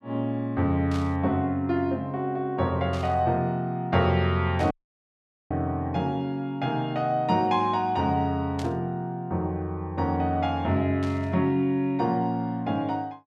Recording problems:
burst of static; 5 times, first at 1 s; peak -10 dB vs average level
audio cutting out; at 4.5 s for 1 s

